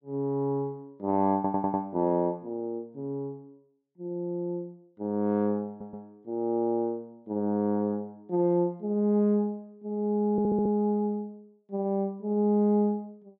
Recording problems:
audio stuttering; at 1.5 s, at 5.5 s and at 10 s

